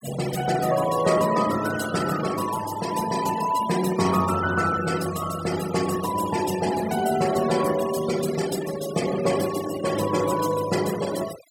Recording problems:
denoising artefacts; signal-to-artefact ratio 11 dB

